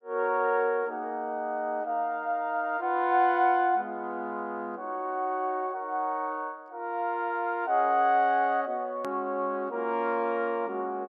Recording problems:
hard cut with a click; at 9 s

